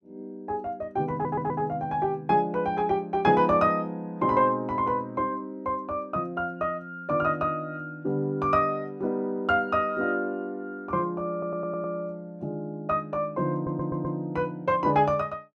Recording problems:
audio stuttering; at 1 s, at 11 s and at 14 s

